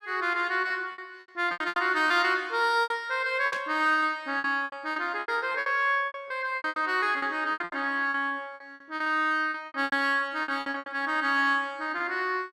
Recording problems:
packet loss; 17% of the sound replaced, filled with repeated pitch periods
burst of static; at 3.5 s; peak -7 dB vs average level

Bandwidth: 14.5 kHz